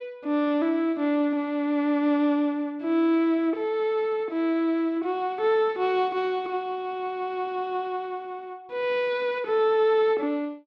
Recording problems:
none

